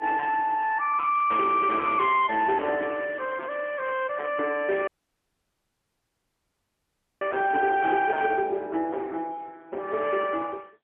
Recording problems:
telephone audio; 260 Hz to 3.5 kHz, AMR-NB, then MP3
distortion; hard clipping, uneven, signal-to-distortion ratio 10 dB
crackle; from 1 to 4 s; loose cable, SNR 28 dB
dropout; at 5 s for 2.5 s

